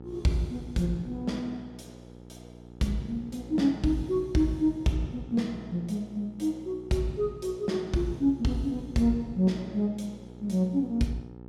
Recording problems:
hum; 60 Hz, harmonics up to 960 Hz, SNR 17 dB

